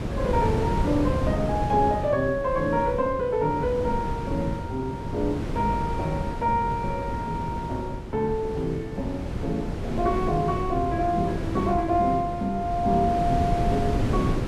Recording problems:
wind noise; below 320 Hz, SNR 4 dB

